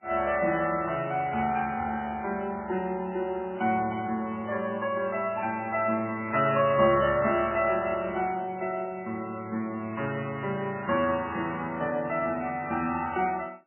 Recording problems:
codec artefacts; MP3, log-spectral distance 3 dB, nothing above 2.7 kHz

